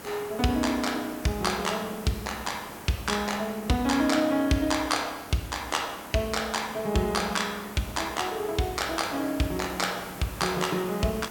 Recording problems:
background hiss; slope -6 dB per octave, SNR 13 dB

